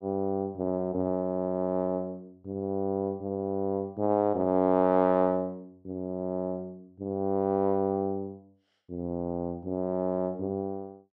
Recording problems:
none

